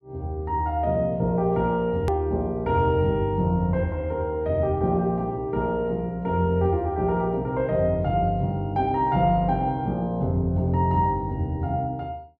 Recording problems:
click at an edit; at 2 s

